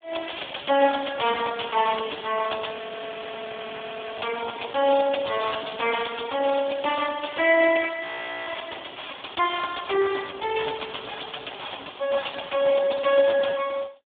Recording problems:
telephone audio; 300 Hz to 3.5 kHz, Speex
crackling; from 1.5 to 5.5 s and from 6 to 11 s; loose cable, SNR 26 dB
frozen audio; at 2.5 s for 1.5 s and at 8 s

